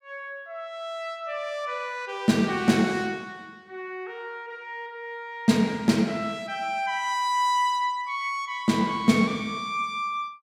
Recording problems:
none

